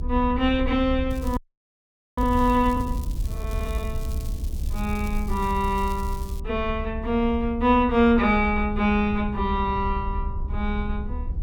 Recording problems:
rumble; below 70 Hz, SNR 7 dB
crackling; from 1 to 6.5 s; loose cable, SNR 22 dB
frozen audio; at 1.5 s for 1 s

